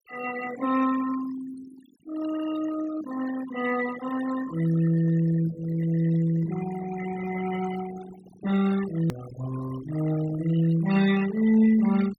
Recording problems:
noise reduction artefacts; signal-to-artefact ratio 13 dB
hard cut with a click; at 9 s

